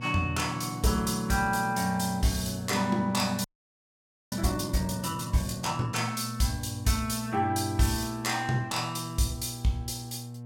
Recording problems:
electrical hum; 60 Hz, harmonics up to 840 Hz, SNR 11 dB
audio freezing; at 3.5 s for 1 s

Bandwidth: 17 kHz